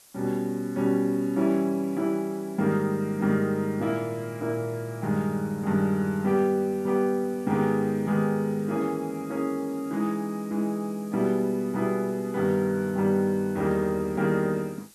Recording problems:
background hiss; SNR 25 dB

